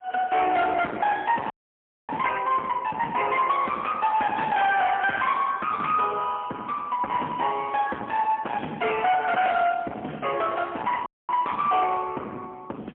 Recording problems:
phone line; 300 Hz to 3.3 kHz, AMR-NB, then MP3
distortion; hard clipping, signal-to-distortion ratio 8 dB
audio freezing; at 1.5 s for 0.5 s and at 11 s

